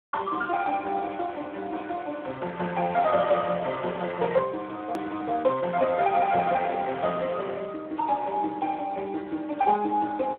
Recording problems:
phone line; 220 Hz to 3.5 kHz, Speex
click at an edit; at 5 s

